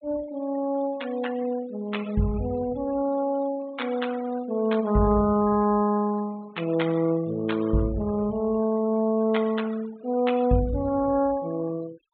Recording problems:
treble missing; nothing above 4 kHz
noise reduction artefacts; signal-to-artefact ratio 20 dB

